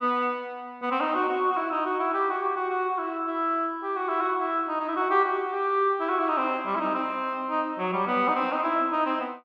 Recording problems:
none

